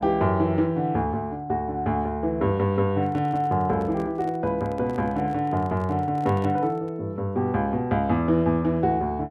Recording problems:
handling noise; from 3 to 7 s; peak -10 dB vs average level

